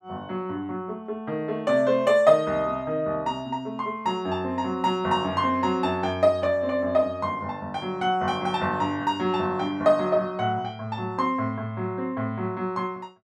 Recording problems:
none

